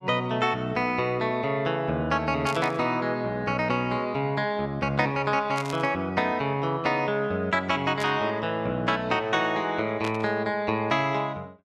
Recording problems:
burst of static; 4 times, first at 2.5 s; peak -5 dB vs average level

